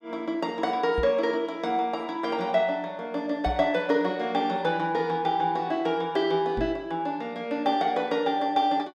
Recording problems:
microphone bump; at 1 s, at 3.5 s and at 6.5 s; peak -3 dB vs average level

